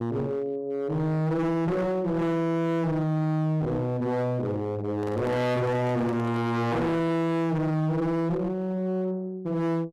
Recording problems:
distortion; hard clipping, signal-to-distortion ratio 5 dB
microphone handling noise; from 5 to 6.5 s; peak -9 dB vs average level

